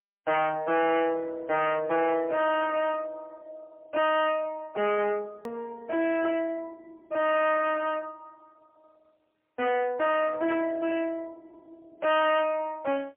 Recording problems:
telephone audio; 240 Hz to 3.3 kHz, AMR-NB, then MP3
distortion; soft clipping, signal-to-distortion ratio 7 dB
edit click; at 5.5 s

